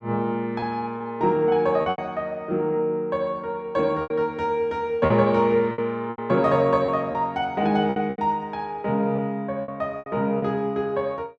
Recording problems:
lost packets; 7% of the sound replaced, filled with repeated pitch periods

